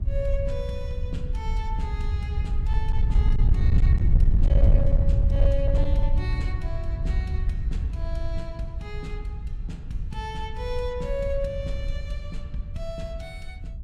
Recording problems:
distorted audio; hard clipping, signal-to-distortion ratio 12 dB
wind noise; below 78 Hz, SNR -8 dB

